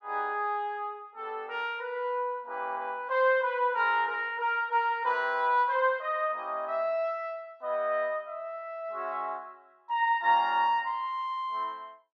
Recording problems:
none

